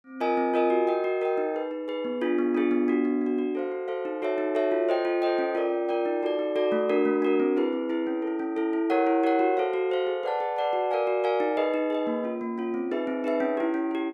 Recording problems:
none

